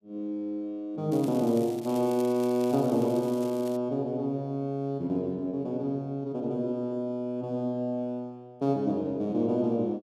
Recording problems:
crackle; from 1 to 4 s; loose cable, SNR 19 dB

